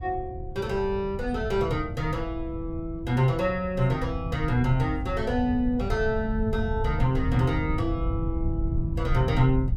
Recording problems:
wind on the microphone; below 110 Hz, SNR 5 dB

